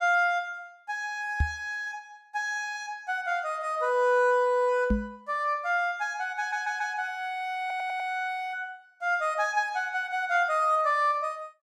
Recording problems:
microphone bump; at 1.5 s and at 5 s; peak +5 dB vs average level
stutter; at 6.5 s and at 7.5 s

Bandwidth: 15.5 kHz